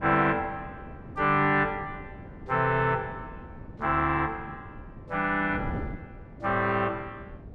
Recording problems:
wind on the microphone; below 310 Hz, SNR 16 dB

